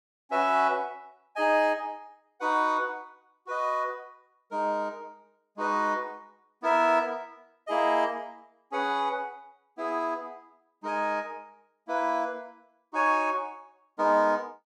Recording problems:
none

